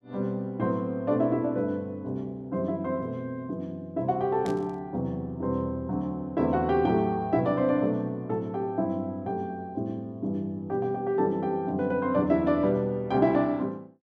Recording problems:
static burst; at 4.5 s; peak -11 dB vs average level

